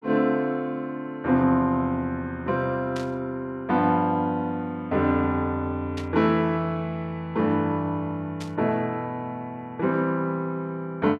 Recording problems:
burst of static; at 3 s, at 6 s and at 8.5 s; peak -9 dB vs average level

